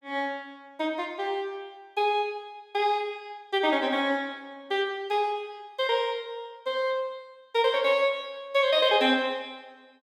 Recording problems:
none

